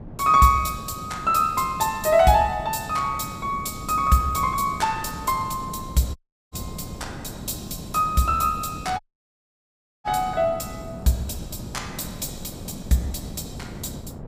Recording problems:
wind noise; below 290 Hz, SNR 14 dB
dropout; at 6 s and at 9 s for 1 s

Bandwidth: 15.5 kHz